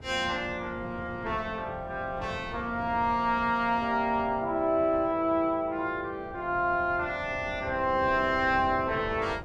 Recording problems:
wind noise; below 370 Hz, SNR 16 dB

